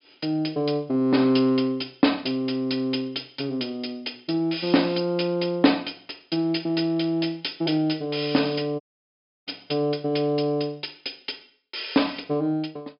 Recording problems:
treble missing; nothing above 5.2 kHz
audio cutting out; at 9 s for 0.5 s

